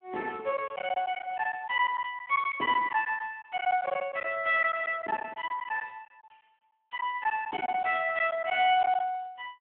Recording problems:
telephone audio; 320 Hz to 3.2 kHz, Speex
packet loss; 10% of the sound replaced, filled with silence

